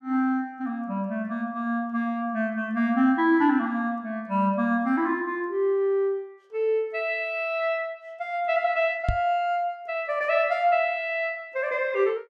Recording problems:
knock on the microphone; at 9 s; peak +3 dB vs average level

